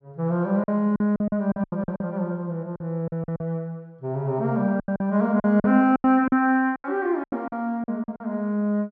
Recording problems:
packet loss; 13% of the sound replaced, filled with silence

